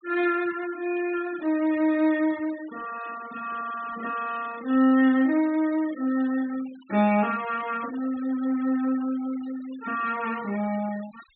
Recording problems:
low-pass filter; nothing above 4 kHz
noise reduction artefacts; signal-to-artefact ratio 20 dB

